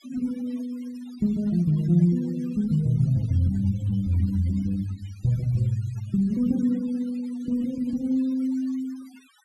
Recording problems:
denoising artefacts; signal-to-artefact ratio 24 dB

